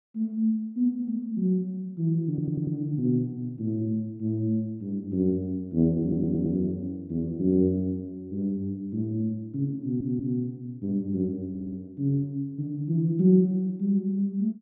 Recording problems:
audio stuttering; 4 times, first at 2.5 s

